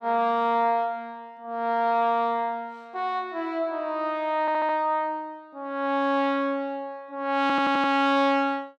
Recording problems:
stutter; at 4.5 s and at 7.5 s

